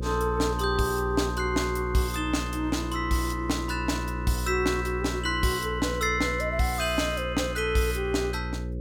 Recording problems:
hum; 60 Hz, harmonics up to 540 Hz, SNR 6 dB

